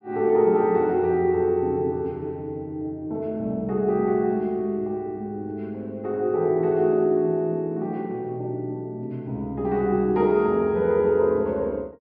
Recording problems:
treble missing; nothing above 5.5 kHz

